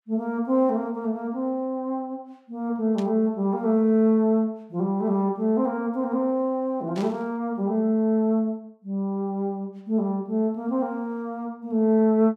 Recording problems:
static burst; at 3 s and at 7 s; peak -12 dB vs average level

